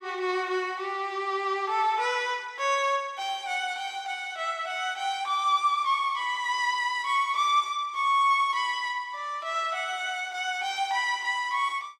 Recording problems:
none

